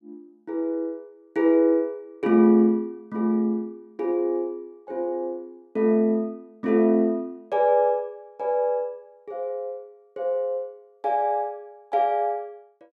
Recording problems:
none

